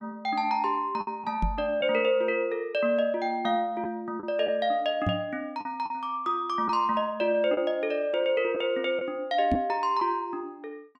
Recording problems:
packet loss; 3% of the sound replaced, filled with the last packet
microphone bump; at 1.5 s, at 5 s and at 9.5 s; peak +4 dB vs average level

